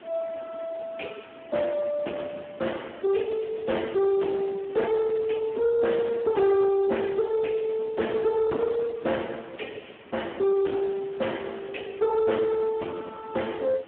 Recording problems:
phone line; 190 Hz to 3.3 kHz, Speex
distorted audio; soft clipping, signal-to-distortion ratio 10 dB
background hiss; SNR 22 dB

